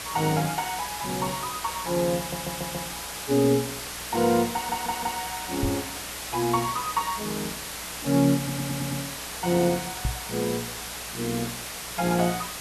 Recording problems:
electrical hum; 60 Hz, harmonics up to 480 Hz, SNR 23 dB
background hiss; SNR 6 dB
audio stuttering; at 2 s, at 4.5 s and at 8.5 s
microphone thump; at 5.5 s and at 10 s; peak +3 dB vs average level

